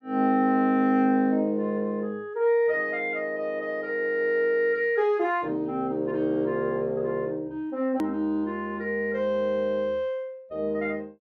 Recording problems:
hard cut with a click; at 8 s

